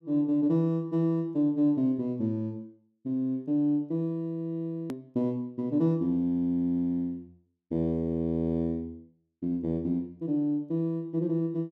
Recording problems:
click at an edit; at 5 s

